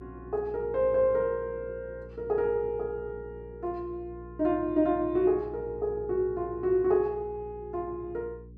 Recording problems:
mains hum; 60 Hz, harmonics up to 480 Hz, SNR 18 dB

